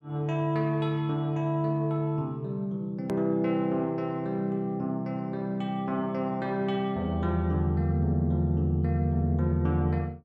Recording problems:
edit click; at 3 s

